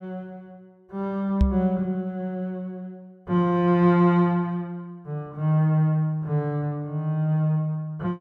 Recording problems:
knock on the microphone; at 1.5 s; peak +6 dB vs average level

